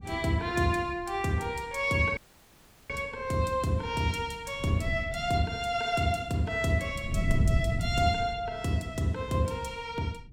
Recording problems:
wind on the microphone; below 140 Hz, SNR 4 dB
dropout; at 2 s for 0.5 s

